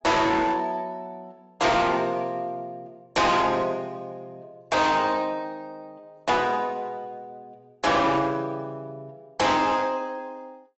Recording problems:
codec artefacts; AAC, log-spectral distance 2 dB, nothing above 7.8 kHz
distortion; hard clipping, signal-to-distortion ratio 6 dB

